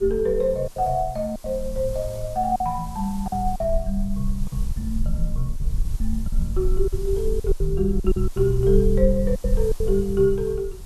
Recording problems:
background hiss; SNR 22 dB
low-frequency rumble; below 48 Hz, SNR 5 dB
lost packets; 9% of the sound replaced, filled with silence

